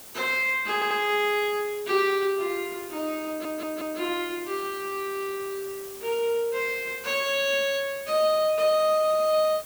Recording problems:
hiss; slope -2 dB per octave, SNR 16 dB
audio stuttering; at 0.5 s and at 3.5 s

